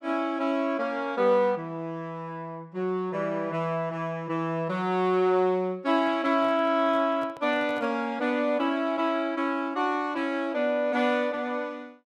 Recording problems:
handling noise; from 6 to 8 s; peak -12 dB vs average level

